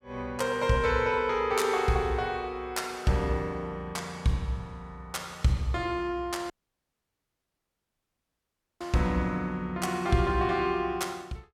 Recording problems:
audio cutting out; at 6.5 s for 2.5 s

